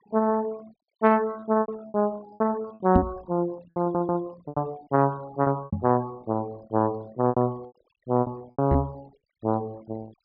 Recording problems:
treble missing; nothing above 5.5 kHz
noise reduction artefacts; signal-to-artefact ratio 24 dB
packet loss; 11% of the sound replaced, filled with repeated pitch periods
knock on the microphone; at 3 s, at 5.5 s and at 8.5 s; peak +8 dB vs average level
stutter; at 4 s

